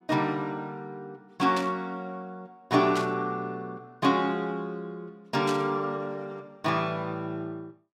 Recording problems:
burst of static; at 1.5 s, at 3 s and at 5.5 s; peak -2 dB vs average level

